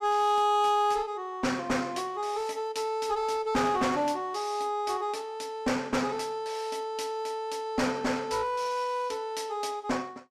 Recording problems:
distorted audio; hard clipping, uneven, signal-to-distortion ratio 11 dB

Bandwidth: 14.5 kHz